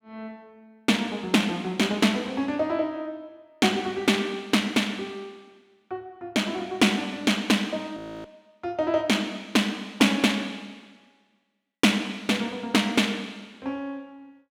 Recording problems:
audio freezing; at 8 s

